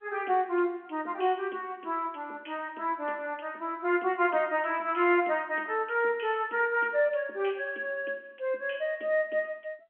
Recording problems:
phone line; 280 Hz to 3.3 kHz, G.711

